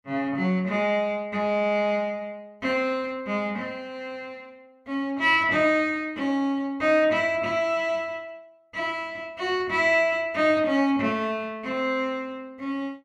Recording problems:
none

